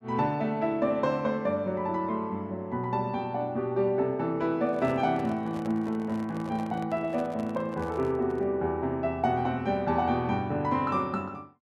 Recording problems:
handling noise; from 4.5 to 8.5 s; peak -9 dB vs average level

